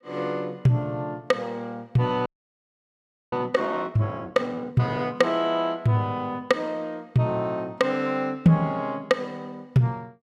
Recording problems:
frozen audio; at 2.5 s for 1 s

